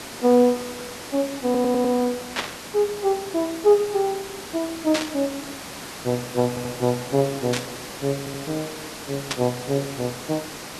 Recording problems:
background hiss; slope -3 dB per octave, SNR 11 dB
stutter; at 1.5 s, at 6.5 s and at 8 s
static burst; 4 times, first at 2.5 s; peak +3 dB vs average level

